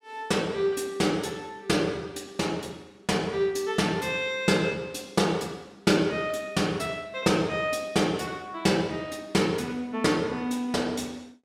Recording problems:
none

